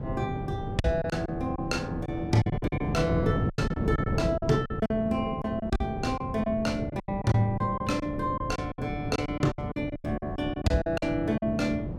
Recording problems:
wind on the microphone; below 300 Hz, SNR 4 dB
packet loss; 13% of the sound replaced, filled with silence

